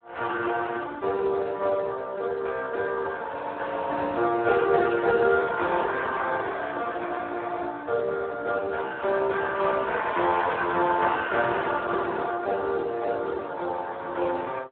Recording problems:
telephone audio; 320 Hz to 2.1 kHz, Speex

